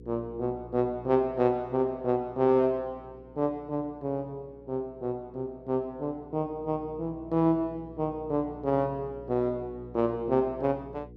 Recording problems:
hum; 60 Hz, harmonics up to 480 Hz, SNR 20 dB

